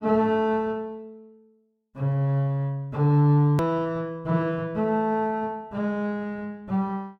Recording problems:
click at an edit; at 3.5 s

